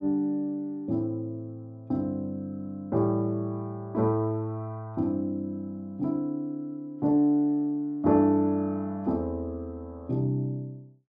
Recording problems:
none

